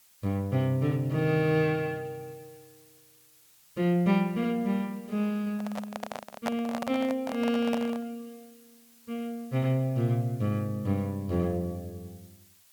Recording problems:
hiss; slope +2 dB per octave, SNR 27 dB
handling noise; from 5.5 to 8 s; peak +1 dB vs average level

